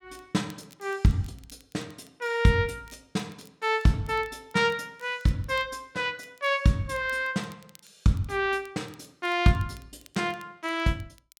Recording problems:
crackle; vinyl, SNR 29 dB

